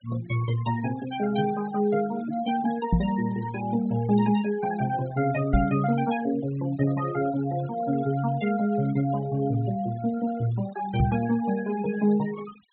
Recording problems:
treble missing; nothing above 4 kHz
noise reduction artefacts; signal-to-artefact ratio 18 dB
microphone bump; at 3 s, at 5.5 s and at 11 s; peak +7 dB vs average level

